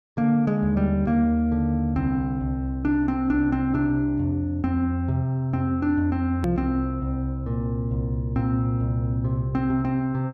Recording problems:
click at an edit; at 6.5 s

